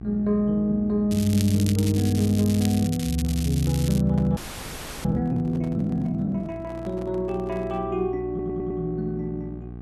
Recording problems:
hum; 60 Hz, harmonics up to 840 Hz, SNR 15 dB
crackle; from 1 to 4 s; loose cable, SNR 11 dB
handling noise; from 4 to 8 s; peak -12 dB vs average level
audio freezing; at 4.5 s for 0.5 s
audio stuttering; at 8.5 s

